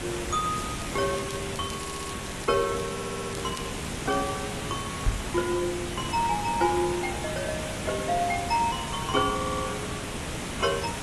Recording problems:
codec artefacts; AAC, log-spectral distance 10 dB
hiss; slope -4 dB per octave, SNR 3 dB
crackle; until 2.5 s and from 2.5 to 4.5 s; loose cable, SNR 14 dB
stutter; at 2 s, at 3 s and at 9.5 s
microphone bump; at 5 s; peak +6 dB vs average level

